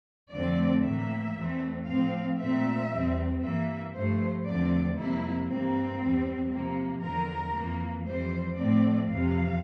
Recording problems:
none

